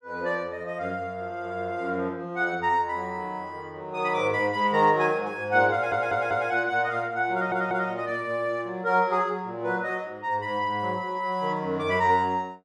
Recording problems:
audio stuttering; at 5.5 s and at 7.5 s

